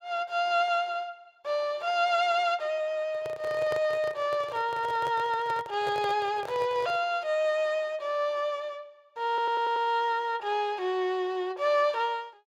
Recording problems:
microphone handling noise; from 3 to 7 s; peak -5 dB vs average level
stutter; at 9.5 s

